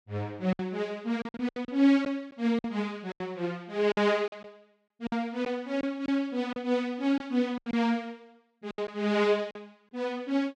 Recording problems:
lost packets; 10% of the sound replaced, filled with silence

